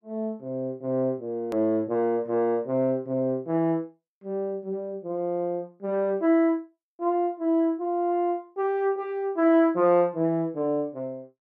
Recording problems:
edit click; at 1.5 s

